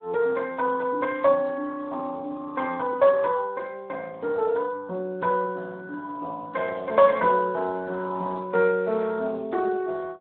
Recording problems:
phone line; 300 Hz to 2.8 kHz, Speex

